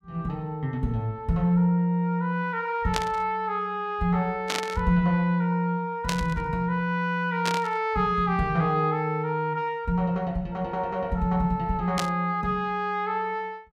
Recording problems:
static burst; 5 times, first at 3 s; peak +2 dB vs average level

